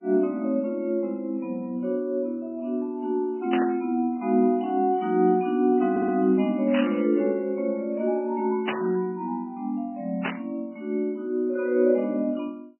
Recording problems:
lossy codec; MP3, log-spectral distance 2 dB, nothing above 2.4 kHz
burst of static; 4 times, first at 3.5 s; peak 0 dB vs average level
audio stuttering; at 6 s

